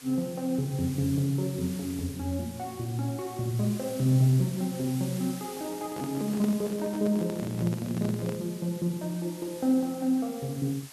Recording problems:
hiss; slope +1 dB per octave, SNR 15 dB
handling noise; from 5.5 to 8.5 s; peak -4 dB vs average level

